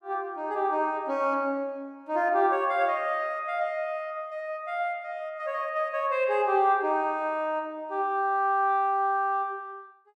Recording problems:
none

